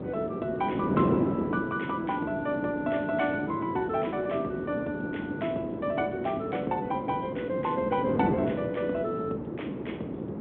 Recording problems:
telephone audio; 190 Hz to 3.6 kHz, G.726
wind noise; below 440 Hz, SNR 2 dB

